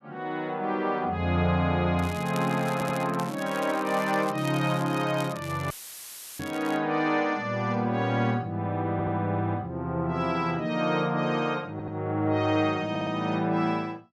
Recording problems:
crackling; from 2 to 7 s; loose cable, SNR 17 dB
audio stuttering; 4 times, first at 2.5 s
dropout; at 5.5 s for 0.5 s; filled with static

